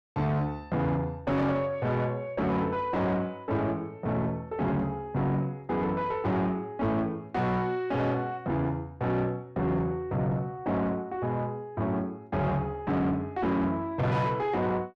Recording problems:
distorted audio; soft clipping, signal-to-distortion ratio 7 dB

